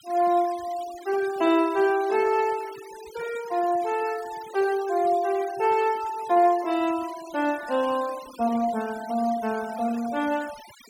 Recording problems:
denoising artefacts; signal-to-artefact ratio 19 dB

